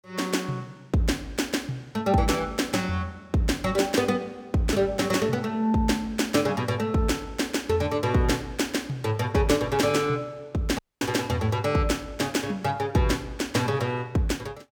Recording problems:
audio cutting out; at 11 s

